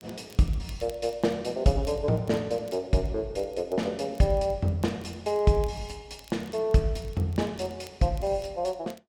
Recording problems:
crackling; vinyl, SNR 27 dB

